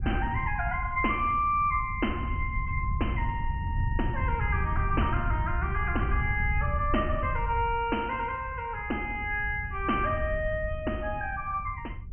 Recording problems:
low-pass filter; nothing above 3.1 kHz
wind on the microphone; below 98 Hz, SNR 4 dB

